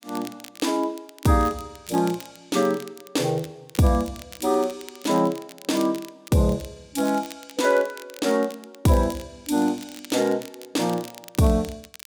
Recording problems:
crackling; vinyl, SNR 19 dB

